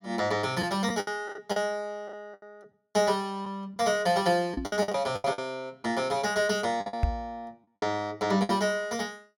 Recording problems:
packet loss; 9% of the sound replaced, filled with the last packet
microphone bump; at 4.5 s and at 7 s; peak +6 dB vs average level

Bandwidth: 16 kHz